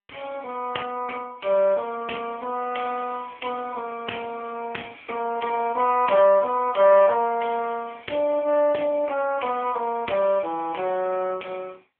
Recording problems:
phone line; 300 Hz to 3.1 kHz, AMR-NB

